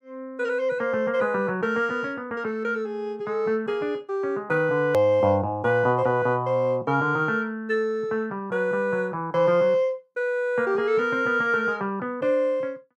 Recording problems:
edit click; at 5 s

